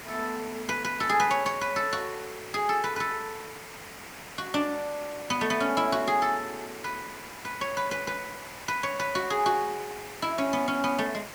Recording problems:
hiss; SNR 13 dB

